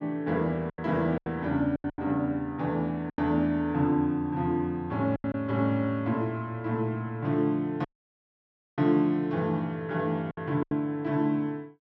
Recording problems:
packet loss; 6% of the sound replaced, filled with silence
dropout; at 8 s for 1 s

